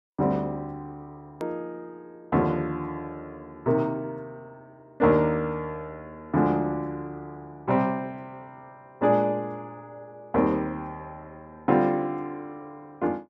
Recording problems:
edit click; at 1.5 s

